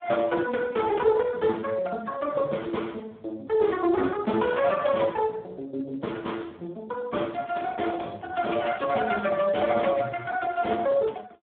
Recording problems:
telephone audio; 240 Hz to 3.5 kHz, Speex

